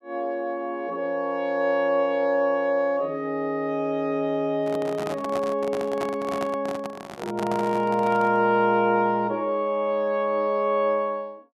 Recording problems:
handling noise; from 4.5 to 8.5 s; peak -4 dB vs average level

